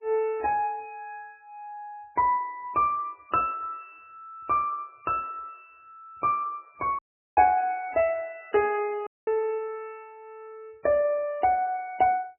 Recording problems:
codec artefacts; MP3, log-spectral distance 2 dB, nothing above 2.4 kHz
dropout; at 7 s and at 9 s

